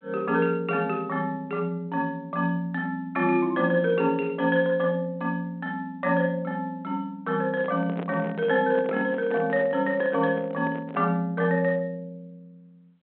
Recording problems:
phone line; 190 Hz to 3.7 kHz, G.726
microphone handling noise; from 7.5 to 11 s; peak -6 dB vs average level

